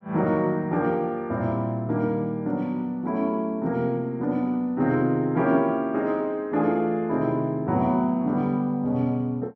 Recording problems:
none

